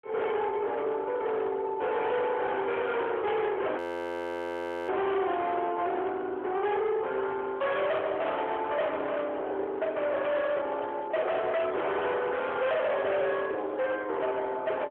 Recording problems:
phone line; 300 Hz to 3.8 kHz, AMR-NB
distorted audio; hard clipping, signal-to-distortion ratio 7 dB
audio freezing; at 4 s for 1 s
handling noise; from 10 to 12 s; peak -9 dB vs average level

